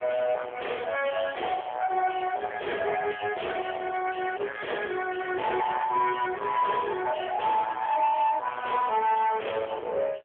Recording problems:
telephone audio; 320 Hz to 2.8 kHz, AMR-NB
distorted audio; soft clipping, signal-to-distortion ratio 8 dB

